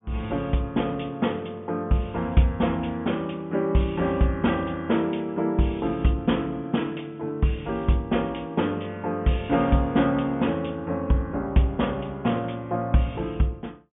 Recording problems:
low-pass filter; nothing above 3.5 kHz

